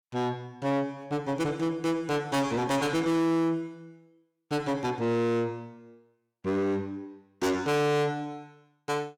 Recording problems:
distorted audio; soft clipping, signal-to-distortion ratio 7 dB

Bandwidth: 17.5 kHz